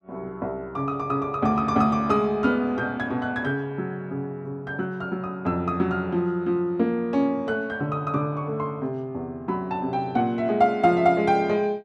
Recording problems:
none

